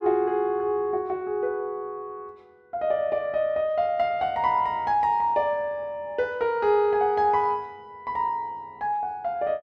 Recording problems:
none

